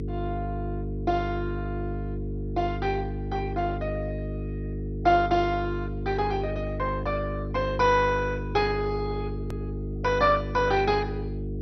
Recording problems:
lossy codec; MP2, log-spectral distance 2 dB, nothing above 5.8 kHz
hum; 50 Hz, harmonics up to 450 Hz, SNR 5 dB
edit click; at 9.5 s

